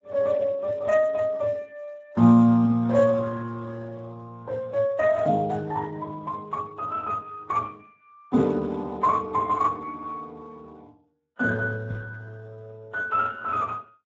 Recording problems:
lossy codec; MP3, then Speex, log-spectral distance 2 dB, nothing above 7.3 kHz
knock on the microphone; at 12 s; peak -5 dB vs average level

